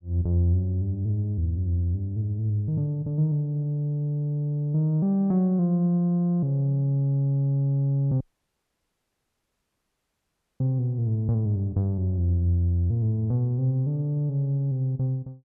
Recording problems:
audio cutting out; at 8 s for 2.5 s

